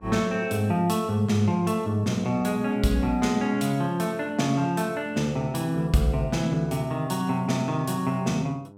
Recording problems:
hum; 50 Hz, harmonics up to 1.1 kHz, SNR 25 dB

